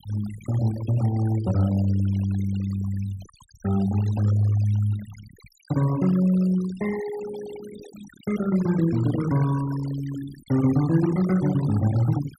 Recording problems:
denoising artefacts; signal-to-artefact ratio 17 dB

